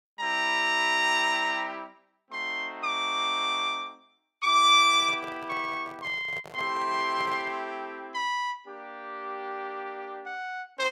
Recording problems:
handling noise; from 5 to 7.5 s; peak -12 dB vs average level

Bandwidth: 16 kHz